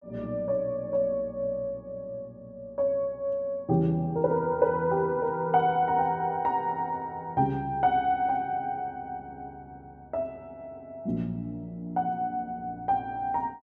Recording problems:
none

